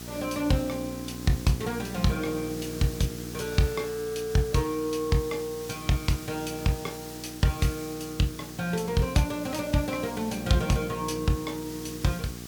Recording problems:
electrical hum; 60 Hz, harmonics up to 1.2 kHz, SNR 12 dB
hiss; slope +2 dB per octave, SNR 14 dB

